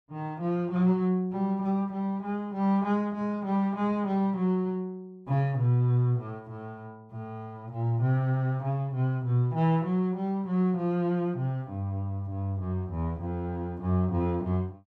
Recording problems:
none

